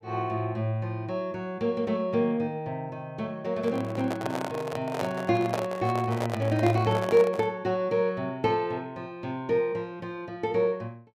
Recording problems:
microphone handling noise; from 3.5 to 7.5 s; peak +3 dB vs average level

